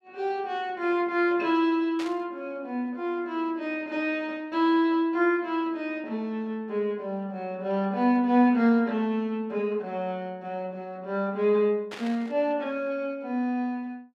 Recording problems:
burst of static; at 2 s and at 12 s; peak -7 dB vs average level

